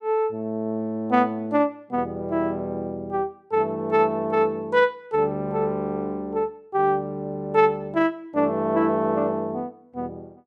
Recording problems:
none

